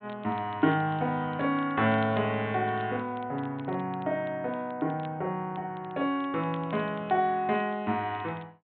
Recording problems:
treble missing; nothing above 4 kHz
crackle; vinyl, SNR 27 dB

